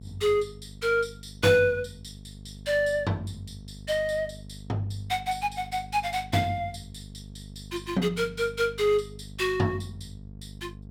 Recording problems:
hum; 50 Hz, harmonics up to 500 Hz, SNR 17 dB

